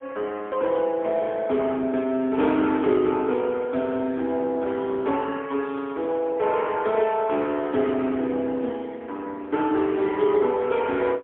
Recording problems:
phone line; 220 Hz to 3.4 kHz, AMR-NB, then MP3

